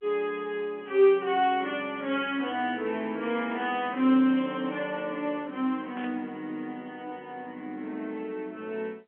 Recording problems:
telephone audio; 220 Hz to 3.4 kHz, G.711
static burst; at 3.5 s and at 6 s; peak -12 dB vs average level

